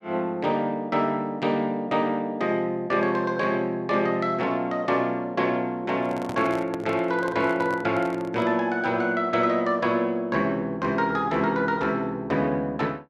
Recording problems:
microphone handling noise; from 6 to 8.5 s; peak -6 dB vs average level

